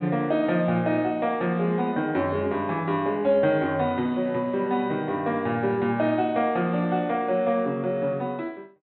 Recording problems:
treble cut off; nothing above 4 kHz

